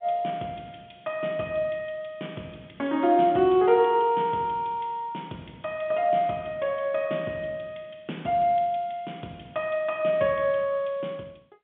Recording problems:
phone line; 170 Hz to 3.6 kHz, G.711

